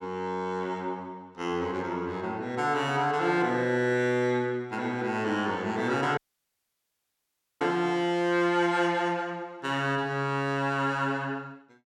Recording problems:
audio cutting out; at 6 s for 1.5 s

